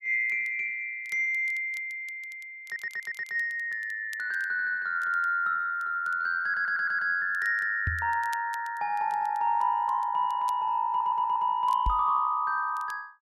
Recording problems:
crackling; vinyl, SNR 27 dB
audio stuttering; 4 times, first at 2.5 s
knock on the microphone; at 8 s and at 12 s; peak +1 dB vs average level

